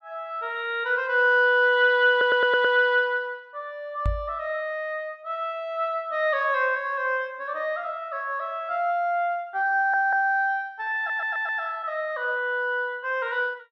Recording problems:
audio stuttering; at 2 s, at 10 s and at 11 s
knock on the microphone; at 4 s; peak +1 dB vs average level

